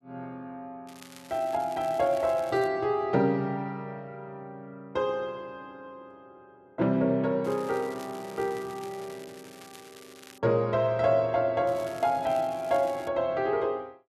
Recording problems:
crackle; from 1 to 2.5 s, from 7.5 to 10 s and from 12 to 13 s; loose cable, SNR 22 dB

